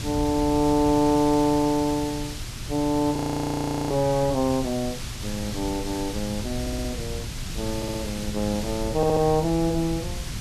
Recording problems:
mains hum; 60 Hz, harmonics up to 600 Hz, SNR 20 dB
background hiss; slope +1 dB per octave, SNR 12 dB
wind on the microphone; below 120 Hz, SNR 12 dB
frozen audio; at 3 s for 0.5 s
audio stuttering; at 6.5 s, at 8 s and at 9 s

